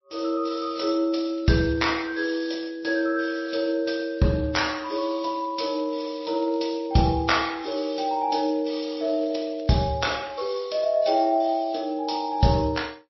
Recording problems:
lossy codec; MP3, then MP3, log-spectral distance 4 dB, nothing above 5.7 kHz
crackling; 4 times, first at 1 s; loose cable, SNR 29 dB

